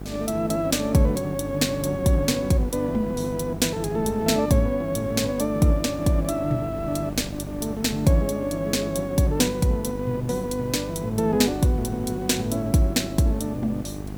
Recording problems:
electrical hum; 50 Hz, harmonics up to 850 Hz, SNR 11 dB
hiss; slope -2 dB per octave, SNR 27 dB
wind noise; below 340 Hz, SNR 18 dB

